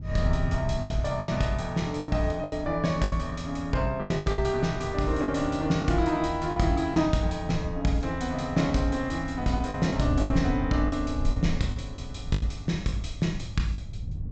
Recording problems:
low-pass filter; nothing above 8 kHz
wind on the microphone; below 100 Hz, SNR 9 dB
packet loss; 9% of the sound replaced, filled with the last packet

